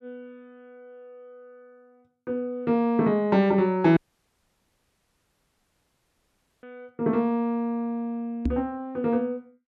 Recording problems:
audio cutting out; at 4 s for 2.5 s
knock on the microphone; at 8.5 s; peak +1 dB vs average level

